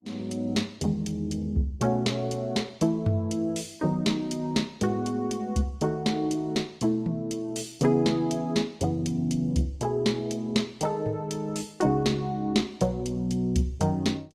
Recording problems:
lossy codec; Opus, log-spectral distance 2 dB, nothing above 17.7 kHz

